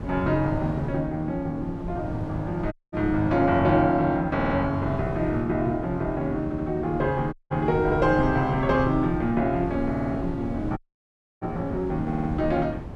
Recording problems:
wind noise; below 280 Hz, SNR 10 dB
audio cutting out; at 2.5 s, at 7.5 s and at 11 s for 0.5 s
audio stuttering; 4 times, first at 4.5 s

